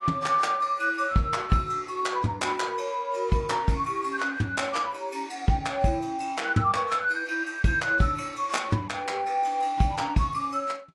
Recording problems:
codec artefacts; AAC, log-spectral distance 2 dB, nothing above 11 kHz

